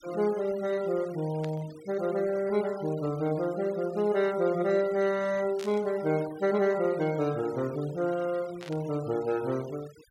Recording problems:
noise reduction artefacts; signal-to-artefact ratio 20 dB
burst of static; at 1.5 s, at 5.5 s and at 8.5 s; peak -10 dB vs average level

